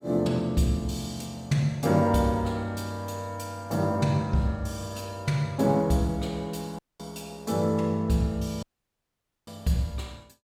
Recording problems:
audio cutting out; at 7 s and at 8.5 s for 1 s

